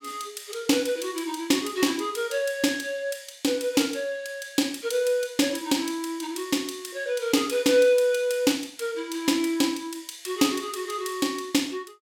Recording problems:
none

